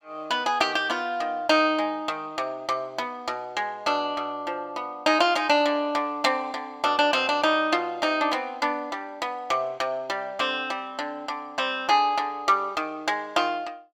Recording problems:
none

